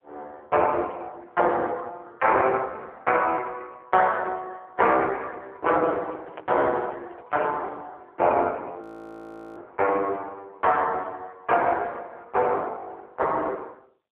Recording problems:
telephone audio; 300 Hz to 3.2 kHz, AMR-NB
microphone handling noise; from 6 to 7.5 s; peak -15 dB vs average level
frozen audio; at 9 s for 1 s

